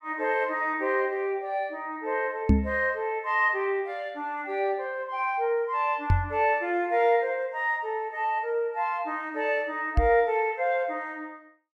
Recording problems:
microphone bump; at 2.5 s, at 6 s and at 10 s; peak +9 dB vs average level

